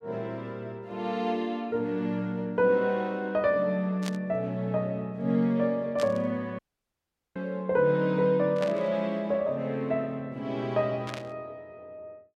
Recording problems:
static burst; 4 times, first at 4 s; peak -5 dB vs average level
audio cutting out; at 6.5 s for 1 s

